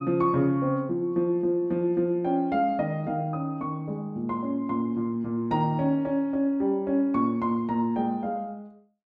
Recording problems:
none

